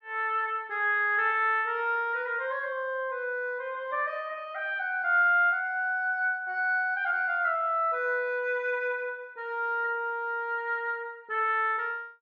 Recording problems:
none

